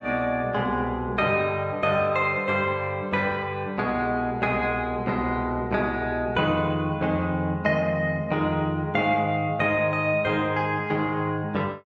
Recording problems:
none

